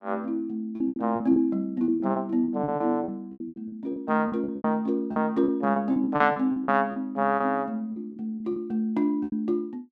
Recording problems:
packet loss; 16% of the sound replaced, filled with repeated pitch periods

